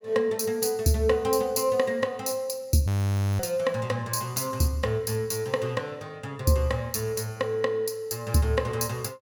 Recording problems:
frozen audio; at 3 s for 0.5 s

